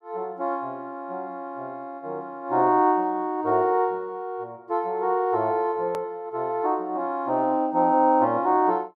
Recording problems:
hard cut with a click; at 6 s

